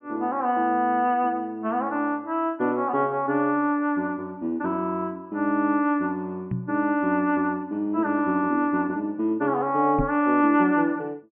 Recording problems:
treble missing; nothing above 3.1 kHz
microphone bump; at 6.5 s and at 10 s; peak +2 dB vs average level

